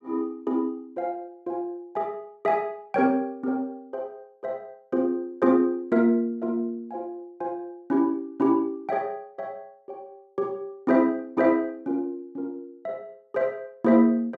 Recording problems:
none

